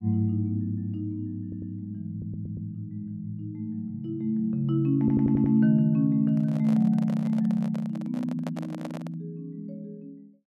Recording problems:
audio stuttering; at 1.5 s, at 2 s and at 5 s
handling noise; from 6 to 9 s; peak -7 dB vs average level

